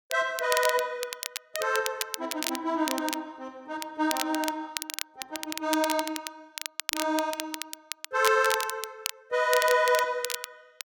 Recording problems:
crackling; vinyl, SNR 7 dB

